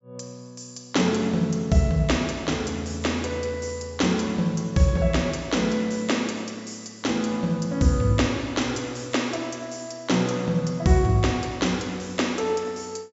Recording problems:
low-pass filter; nothing above 8 kHz

